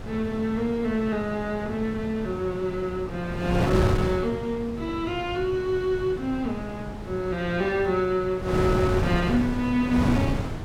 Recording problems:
wind noise; below 410 Hz, SNR 5 dB

